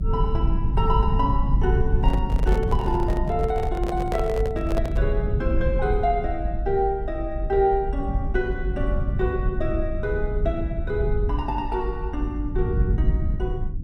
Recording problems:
low-frequency rumble; below 88 Hz, SNR -1 dB
microphone handling noise; from 2 to 5 s; peak 0 dB vs average level

